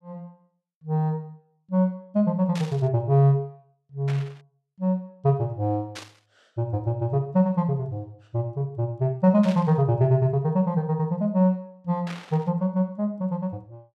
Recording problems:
static burst; 5 times, first at 2.5 s; peak -9 dB vs average level

